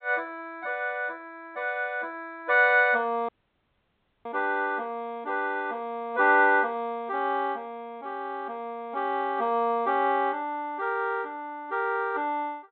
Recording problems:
low-pass filter; nothing above 4 kHz
dropout; at 3.5 s for 1 s

